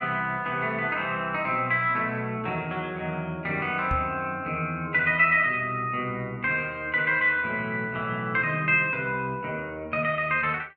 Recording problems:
microphone thump; at 4 s; peak -2 dB vs average level

